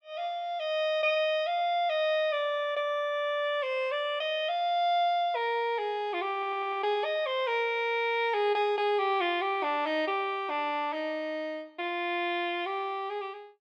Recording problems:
audio stuttering; at 6.5 s

